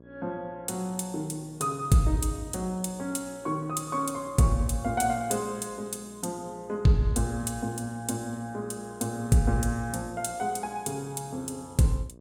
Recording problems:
electrical hum; 60 Hz, harmonics up to 1.1 kHz, SNR 23 dB

